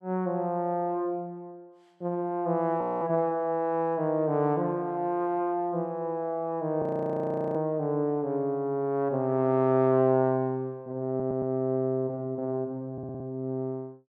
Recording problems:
frozen audio; at 3 s and at 7 s for 0.5 s
audio stuttering; at 11 s and at 13 s

